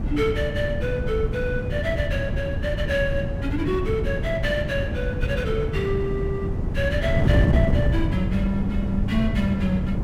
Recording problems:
wind on the microphone; below 180 Hz, SNR -1 dB

